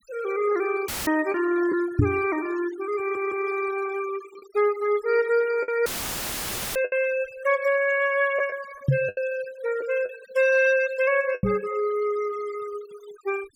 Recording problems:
denoising artefacts; signal-to-artefact ratio 18 dB
packet loss; 4% of the sound replaced, filled with the last packet
dropout; at 1 s and at 6 s for 1 s; filled with static
microphone thump; at 2 s, at 9 s and at 11 s; peak +8 dB vs average level
stutter; at 3 s

